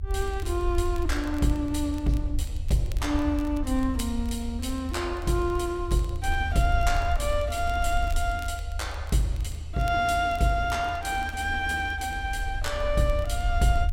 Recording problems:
rumble; below 78 Hz, SNR 5 dB
crackling; vinyl, SNR 24 dB

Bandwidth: 16 kHz